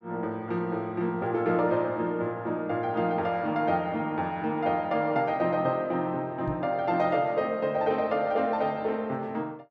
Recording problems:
microphone thump; at 6.5 s; peak -3 dB vs average level

